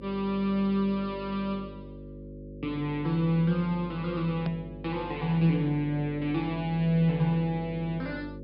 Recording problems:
treble missing; nothing above 5.5 kHz
mains hum; 50 Hz, harmonics up to 550 Hz, SNR 14 dB
click at an edit; at 4.5 s

